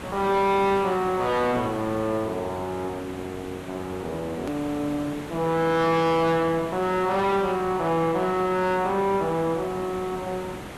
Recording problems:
distorted audio; soft clipping, signal-to-distortion ratio 11 dB
hiss; SNR 13 dB
edit click; at 4.5 s

